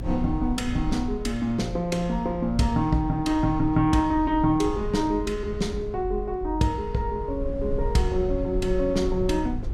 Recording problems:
rumble; below 78 Hz, SNR 9 dB

